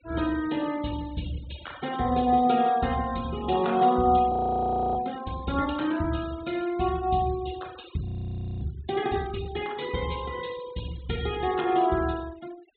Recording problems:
treble cut off; nothing above 4 kHz
denoising artefacts; signal-to-artefact ratio 19 dB
frozen audio; at 4.5 s for 0.5 s and at 8 s for 0.5 s

